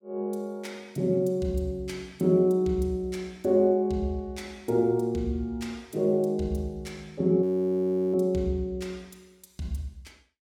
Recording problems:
audio freezing; at 7.5 s for 0.5 s

